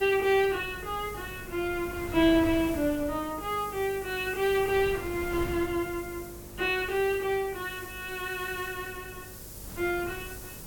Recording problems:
electrical hum; 50 Hz, harmonics up to 600 Hz, SNR 21 dB
hiss; SNR 16 dB
wind on the microphone; below 380 Hz, SNR 15 dB

